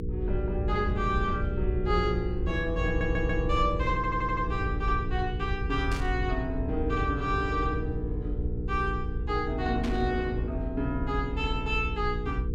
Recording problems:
hum; 60 Hz, harmonics up to 480 Hz, SNR 6 dB
rumble; below 76 Hz, SNR 3 dB
stutter; at 3 s and at 4 s
burst of static; at 6 s and at 10 s; peak -4 dB vs average level

